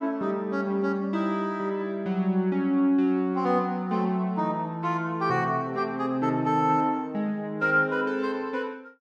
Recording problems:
none

